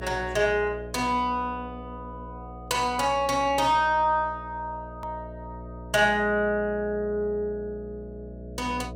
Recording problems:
mains hum; 60 Hz, harmonics up to 660 Hz, SNR 16 dB
hard cut with a click; at 5 s

